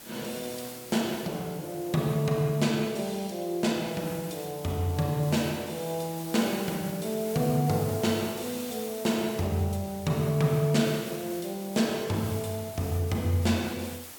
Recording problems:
background hiss; slope -2 dB per octave, SNR 13 dB

